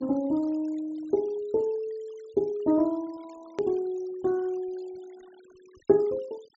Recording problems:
treble cut off; nothing above 7.5 kHz
denoising artefacts; signal-to-artefact ratio 27 dB
edit click; at 3.5 s

